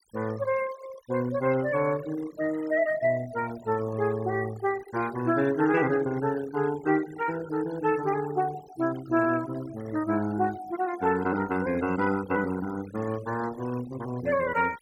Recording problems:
denoising artefacts; signal-to-artefact ratio 17 dB

